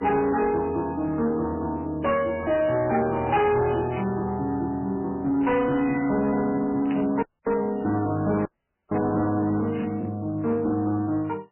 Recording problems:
lossy compression; MP3, log-spectral distance 2 dB, nothing above 2.5 kHz
distorted audio; soft clipping, signal-to-distortion ratio 10 dB
burst of static; 4 times, first at 2.5 s; peak -9 dB vs average level
audio cutting out; at 7 s and at 8.5 s

